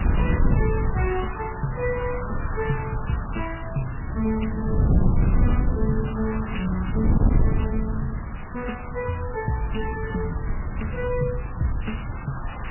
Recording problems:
codec artefacts; MP3, log-spectral distance 10 dB, nothing above 2.8 kHz
distortion; hard clipping, signal-to-distortion ratio 12 dB
hiss; SNR 10 dB
wind on the microphone; below 140 Hz, SNR -2 dB

